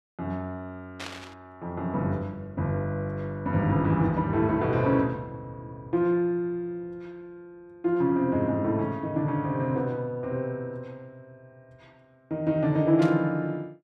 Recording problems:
burst of static; at 1 s and at 13 s; peak -7 dB vs average level

